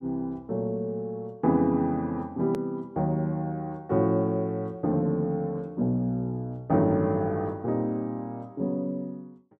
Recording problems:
edit click; at 2.5 s

